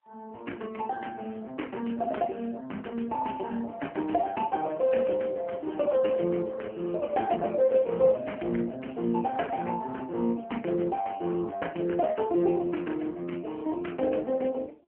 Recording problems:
phone line; 190 Hz to 3.1 kHz, AMR-NB

